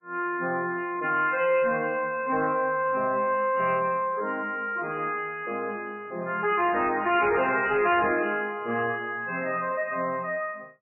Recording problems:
lossy compression; MP3, log-spectral distance 3 dB, nothing above 2.6 kHz
distortion; soft clipping, signal-to-distortion ratio 11 dB

